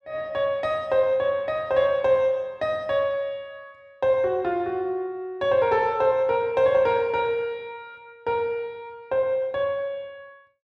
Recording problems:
none

